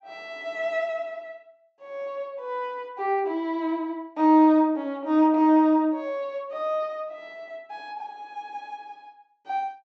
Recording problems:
treble cut off; nothing above 8 kHz

